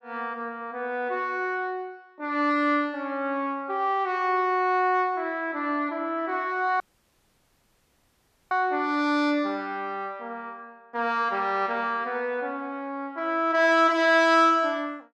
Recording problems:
audio cutting out; at 7 s for 1.5 s

